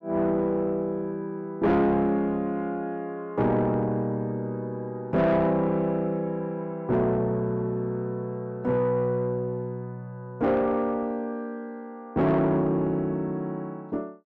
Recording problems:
distortion; soft clipping, signal-to-distortion ratio 10 dB

